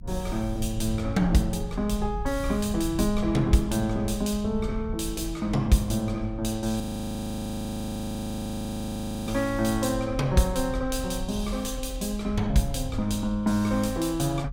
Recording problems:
low-frequency rumble; below 78 Hz, SNR 10 dB
frozen audio; at 7 s for 2.5 s

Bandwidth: 17 kHz